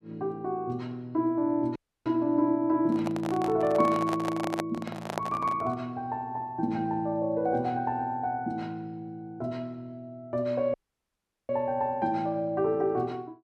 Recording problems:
dropout; at 2 s and at 11 s for 1 s
handling noise; from 3 to 6 s; peak +2 dB vs average level

